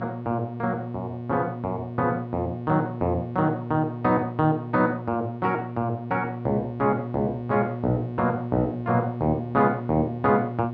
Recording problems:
hum; 60 Hz, harmonics up to 1.1 kHz, SNR 8 dB

